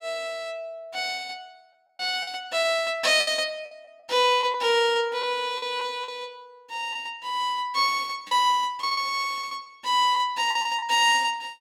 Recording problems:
lost packets; 6% of the sound replaced, filled with the last packet

